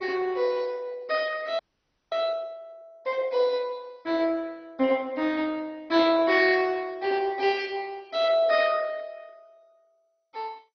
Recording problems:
lossy compression; MP2, log-spectral distance 3 dB, nothing above 5.2 kHz
frozen audio; at 1.5 s for 0.5 s

